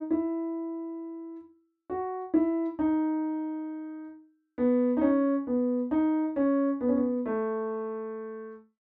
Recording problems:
none

